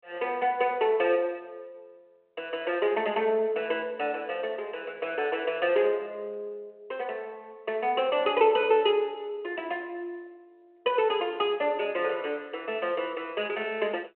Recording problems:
phone line; 300 Hz to 3.2 kHz, G.726

